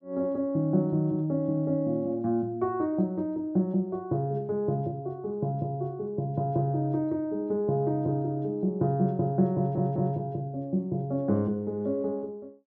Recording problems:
audio stuttering; at 9.5 s

